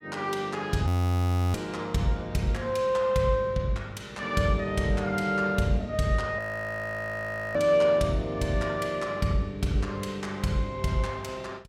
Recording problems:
audio freezing; at 1 s for 0.5 s and at 6.5 s for 1 s

